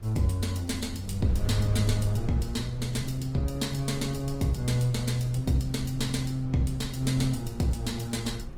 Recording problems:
lossy compression; Opus, log-spectral distance 3 dB, nothing above 19 kHz
wind noise; below 80 Hz, SNR 12 dB

